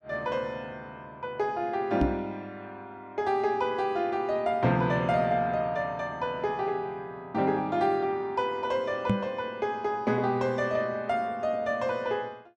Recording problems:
microphone thump; at 2 s and at 9 s; peak +6 dB vs average level

